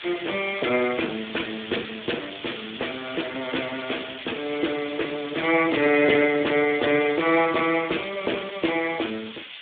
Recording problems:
phone line; 260 Hz to 3.6 kHz, Speex
hiss; SNR 11 dB

